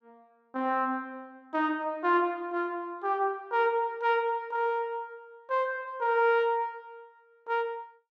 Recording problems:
none

